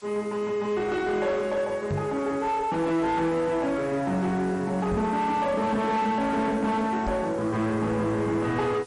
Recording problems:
lossy codec; MP3, log-spectral distance 2 dB
distortion; soft clipping, signal-to-distortion ratio 10 dB
background hiss; slope +1 dB per octave, SNR 25 dB
microphone bump; at 2 s, at 5 s and at 7 s; peak 0 dB vs average level

